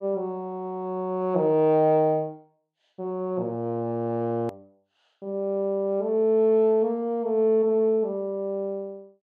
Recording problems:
click at an edit; at 4.5 s

